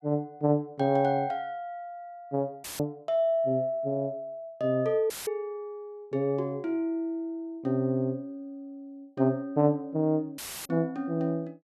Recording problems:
audio cutting out; at 2.5 s, at 5 s and at 10 s; filled with static

